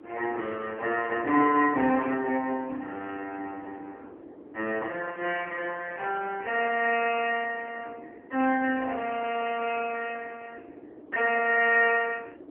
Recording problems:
telephone audio; 240 Hz to 3.1 kHz, AMR-NB
wind noise; below 470 Hz, SNR 19 dB

